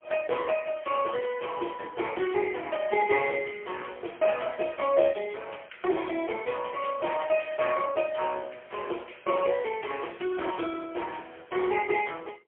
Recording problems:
telephone audio; 280 Hz to 3.3 kHz, AMR-NB, then MP3

